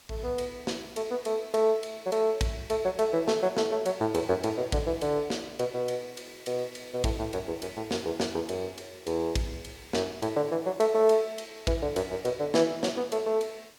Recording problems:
hiss; slope 0 dB per octave, SNR 24 dB

